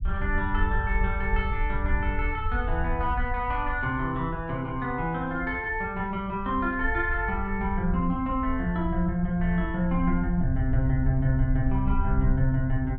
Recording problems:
low-frequency rumble; below 68 Hz, SNR 4 dB

